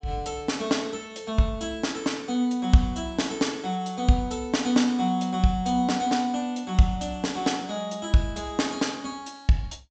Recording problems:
treble cut off; nothing above 8 kHz

